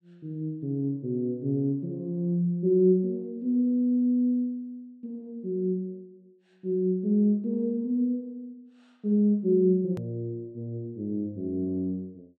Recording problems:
edit click; at 10 s

